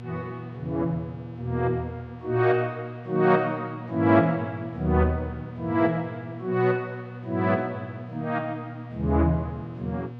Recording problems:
electrical hum; 60 Hz, harmonics up to 960 Hz, SNR 13 dB

